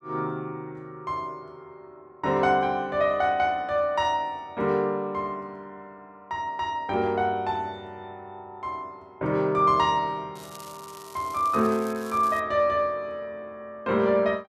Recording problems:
crackle; from 10 to 12 s; loose cable, SNR 20 dB

